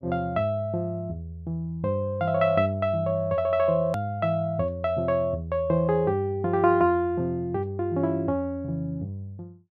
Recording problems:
edit click; at 4 s

